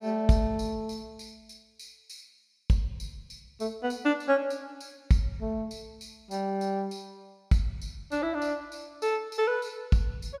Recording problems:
none

